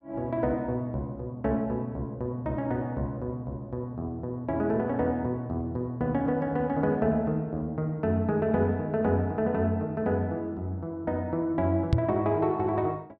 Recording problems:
microphone thump; at 12 s; peak +9 dB vs average level

